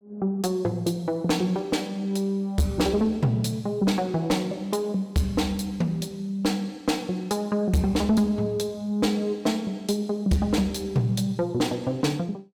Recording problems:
distorted audio; soft clipping, signal-to-distortion ratio 10 dB

